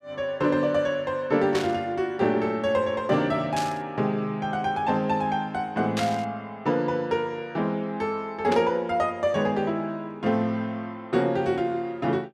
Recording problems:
burst of static; 4 times, first at 1.5 s; peak -1 dB vs average level

